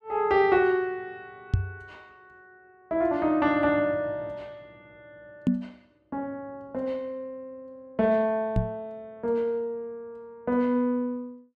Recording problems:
microphone thump; at 1.5 s, at 5.5 s and at 8.5 s; peak +7 dB vs average level

